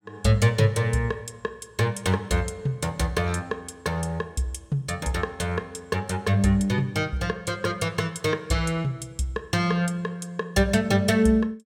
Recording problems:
none

